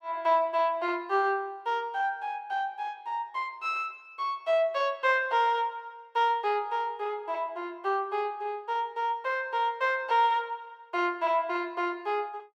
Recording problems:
none

